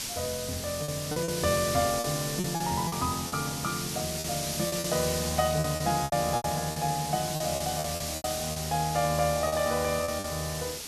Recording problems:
background hiss; SNR 4 dB
packet loss; 10% of the sound replaced, filled with repeated pitch periods

